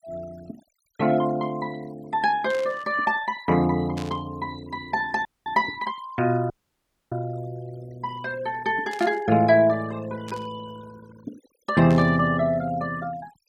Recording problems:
noise reduction artefacts; signal-to-artefact ratio 21 dB
static burst; 5 times, first at 2.5 s; peak -10 dB vs average level
audio cutting out; at 5.5 s and at 6.5 s for 0.5 s

